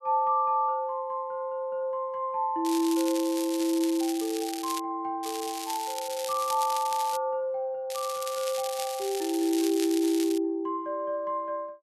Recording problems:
crackle; from 2.5 to 5 s, from 5 to 7 s and from 8 to 10 s; loose cable, SNR 9 dB

